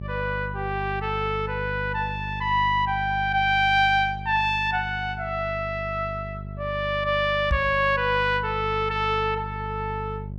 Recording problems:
hum; 50 Hz, harmonics up to 450 Hz, SNR 11 dB
knock on the microphone; at 7.5 s; peak +2 dB vs average level

